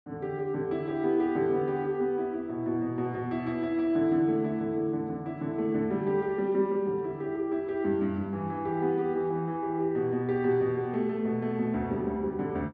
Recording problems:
none

